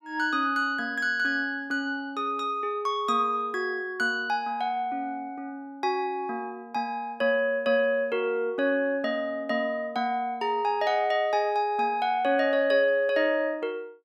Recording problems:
none

